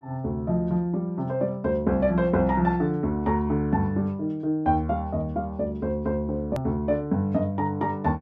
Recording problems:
click at an edit; at 6.5 s

